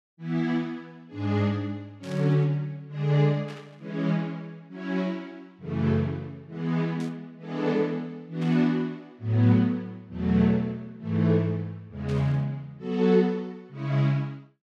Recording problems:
static burst; 5 times, first at 2 s; peak -14 dB vs average level

